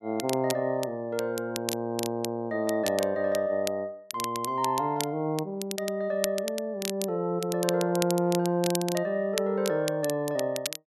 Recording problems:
crackling; vinyl, SNR 9 dB

